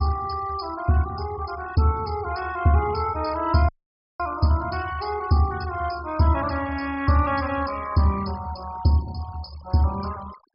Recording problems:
treble cut off; nothing above 5.5 kHz
denoising artefacts; signal-to-artefact ratio 18 dB
audio cutting out; at 3.5 s for 0.5 s

